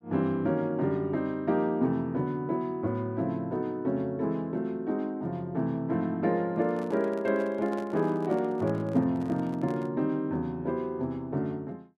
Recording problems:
microphone handling noise; from 6.5 to 10 s; peak -10 dB vs average level

